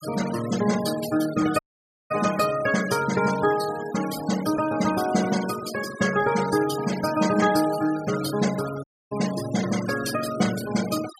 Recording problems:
denoising artefacts; signal-to-artefact ratio 12 dB
audio cutting out; at 1.5 s for 0.5 s and at 9 s

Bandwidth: 15 kHz